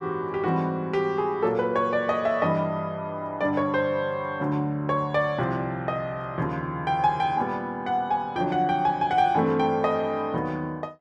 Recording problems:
none

